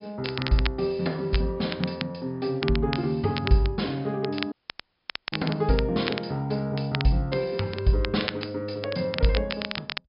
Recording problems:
treble missing; nothing above 5.5 kHz
crackle; vinyl, SNR 9 dB
audio cutting out; at 4.5 s for 1 s

